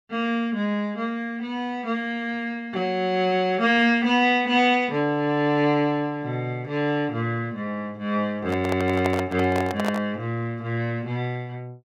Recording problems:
microphone handling noise; from 8.5 to 10 s; peak -1 dB vs average level

